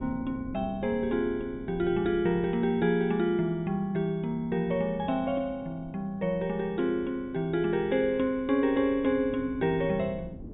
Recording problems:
treble cut off; nothing above 4 kHz
wind noise; below 270 Hz, SNR 17 dB

